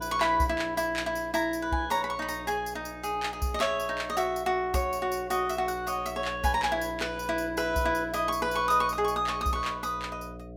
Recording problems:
hum; 60 Hz, harmonics up to 720 Hz, SNR 16 dB

